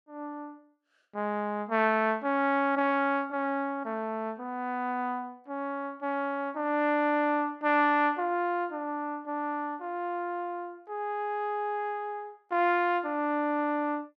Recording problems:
none

